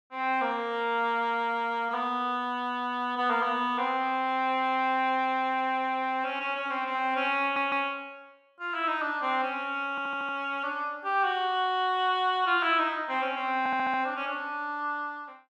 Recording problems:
stutter; at 7.5 s, at 10 s and at 14 s

